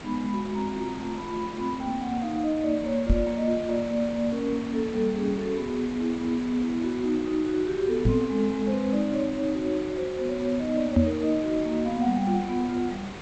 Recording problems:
lossy compression; G.722, log-spectral distance 4 dB
background hiss; SNR 13 dB
knock on the microphone; at 3 s, at 8 s and at 11 s; peak +9 dB vs average level

